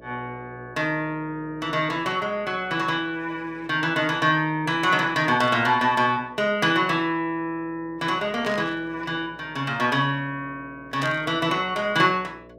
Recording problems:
hum; 60 Hz, harmonics up to 660 Hz, SNR 25 dB
static burst; at 5.5 s, at 8.5 s and at 11 s; peak -8 dB vs average level

